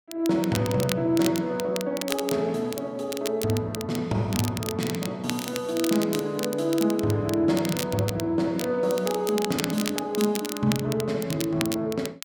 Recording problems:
crackling; vinyl, SNR 9 dB

